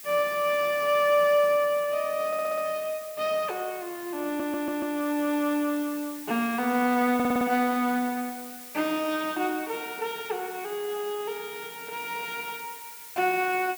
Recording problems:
background hiss; SNR 14 dB
audio stuttering; at 2.5 s, at 4.5 s and at 7 s

